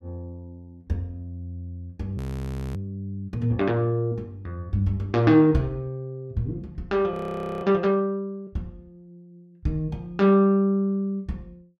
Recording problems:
audio freezing; at 2 s for 0.5 s and at 7 s

